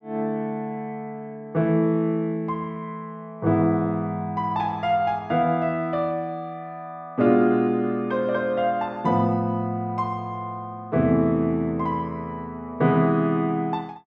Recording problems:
none

